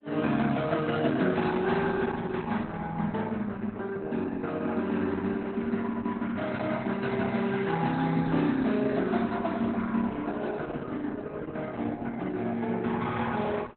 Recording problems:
codec artefacts; Opus, log-spectral distance 4 dB, nothing above 4 kHz

